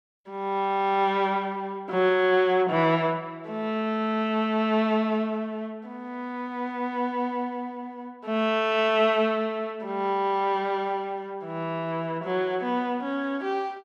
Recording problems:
none

